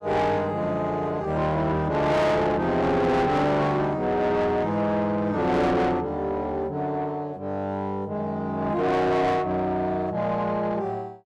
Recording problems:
distorted audio; soft clipping, signal-to-distortion ratio 7 dB

